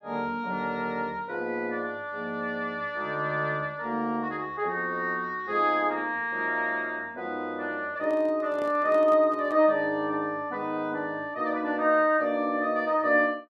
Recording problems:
microphone handling noise; from 8 to 9.5 s; peak -11 dB vs average level

